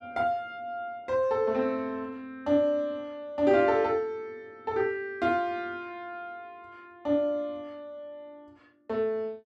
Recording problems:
none

